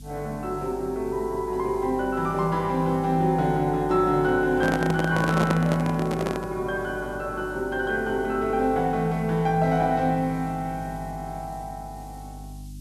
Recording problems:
electrical hum; 50 Hz, harmonics up to 300 Hz, SNR 17 dB
background hiss; SNR 28 dB
microphone handling noise; from 4.5 to 6.5 s; peak +3 dB vs average level

